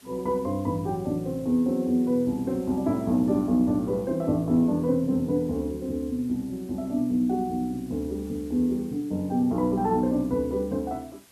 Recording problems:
background hiss; slope -1 dB per octave, SNR 27 dB

